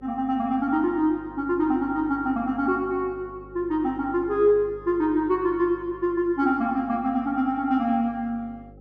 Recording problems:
electrical hum; 50 Hz, harmonics up to 550 Hz, SNR 23 dB

